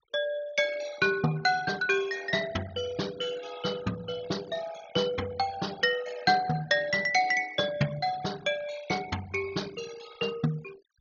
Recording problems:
treble missing; nothing above 6.8 kHz
noise reduction artefacts; signal-to-artefact ratio 18 dB

